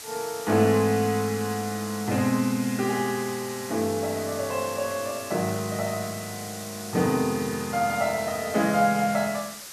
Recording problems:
background hiss; slope +1 dB per octave, SNR 11 dB

